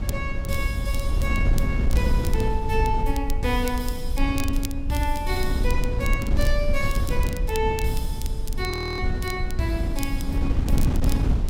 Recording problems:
rumble; below 56 Hz, SNR 2 dB
wind noise; below 140 Hz, SNR 0 dB
crackling; vinyl, SNR 13 dB
audio freezing; at 8.5 s

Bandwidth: 16 kHz